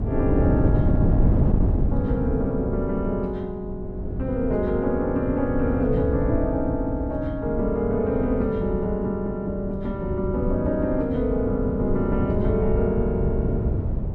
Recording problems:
wind noise; below 180 Hz, SNR 1 dB

